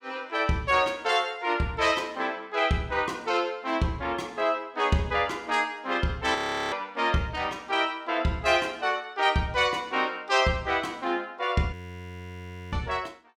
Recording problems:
audio freezing; at 6.5 s and at 12 s for 1 s

